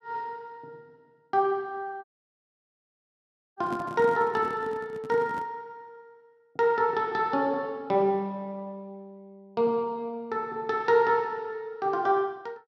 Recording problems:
handling noise; from 2 to 5.5 s; peak -5 dB vs average level
audio cutting out; at 2 s for 1.5 s

